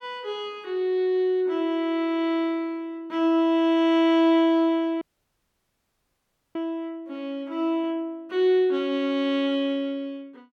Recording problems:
audio cutting out; at 5 s for 1.5 s

